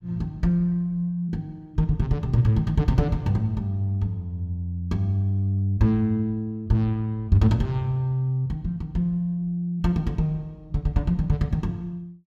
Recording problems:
none

